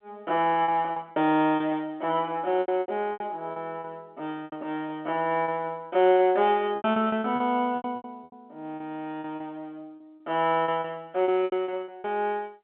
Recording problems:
phone line; 170 Hz to 3.7 kHz, G.711
lost packets; 13% of the sound replaced, filled with repeated pitch periods

